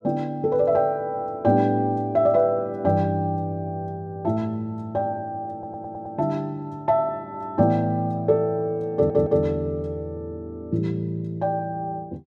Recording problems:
audio stuttering; at 5.5 s and at 9 s

